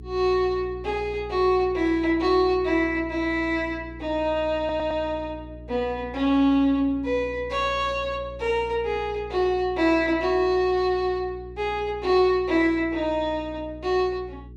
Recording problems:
hum; 60 Hz, harmonics up to 420 Hz, SNR 18 dB
audio stuttering; at 4.5 s

